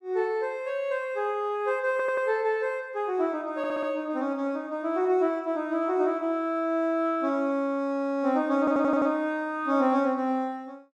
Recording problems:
audio stuttering; at 2 s, at 3.5 s and at 8.5 s

